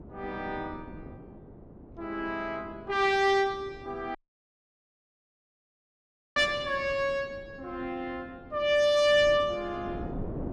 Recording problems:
wind on the microphone; below 390 Hz, SNR 17 dB
audio cutting out; at 4 s for 2 s

